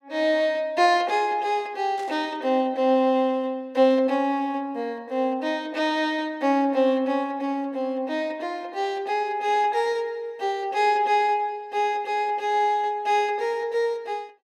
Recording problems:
static burst; at 2 s; peak -17 dB vs average level

